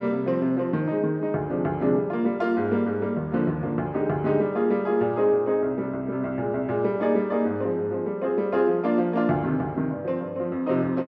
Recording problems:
none

